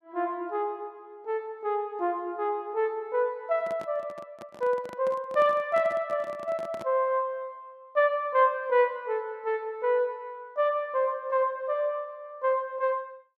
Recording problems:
handling noise; from 3.5 to 7 s; peak -9 dB vs average level

